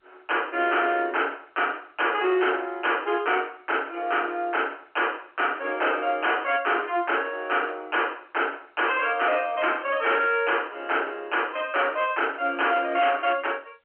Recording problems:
telephone audio; 240 Hz to 3.2 kHz, G.711
distortion; hard clipping, uneven, signal-to-distortion ratio 10 dB

